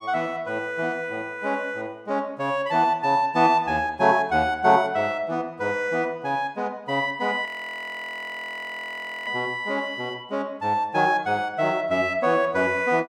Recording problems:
audio freezing; at 7.5 s for 2 s

